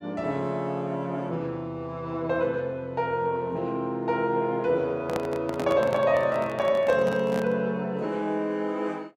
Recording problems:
microphone handling noise; from 5 to 7.5 s; peak -1 dB vs average level

